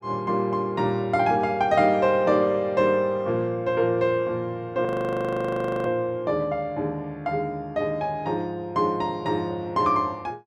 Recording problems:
frozen audio; at 5 s for 1 s

